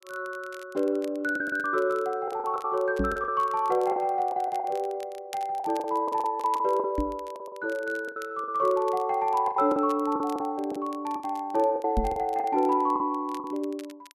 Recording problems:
crackle; vinyl, SNR 24 dB
packet loss; 11% of the sound replaced, filled with the last packet
microphone bump; at 3 s, at 7 s and at 12 s; peak +3 dB vs average level

